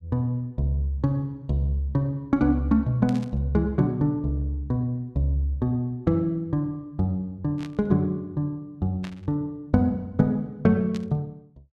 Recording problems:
burst of static; 4 times, first at 3 s; peak -11 dB vs average level

